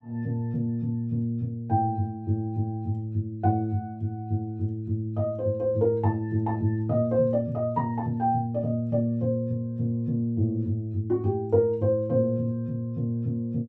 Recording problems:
none

